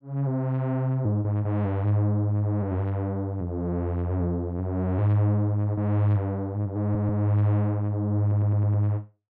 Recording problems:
audio stuttering; at 7 s and at 8 s

